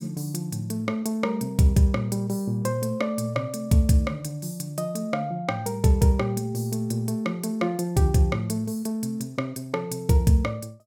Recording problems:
none

